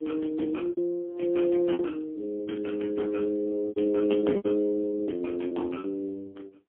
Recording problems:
telephone audio; 220 Hz to 3.3 kHz, AMR-NB, then MP3
lost packets; 8% of the sound replaced, filled with repeated pitch periods

